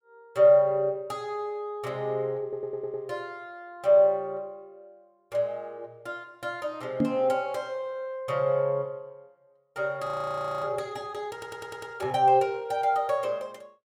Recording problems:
stutter; at 2.5 s and at 11 s
knock on the microphone; at 7 s; peak +5 dB vs average level
frozen audio; at 10 s for 0.5 s

